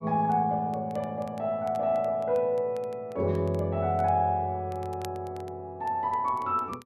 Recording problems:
crackling; vinyl, SNR 28 dB

